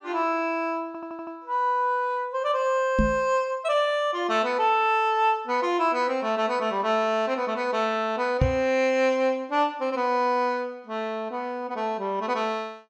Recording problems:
audio stuttering; at 1 s
microphone bump; at 3 s and at 8.5 s; peak +6 dB vs average level

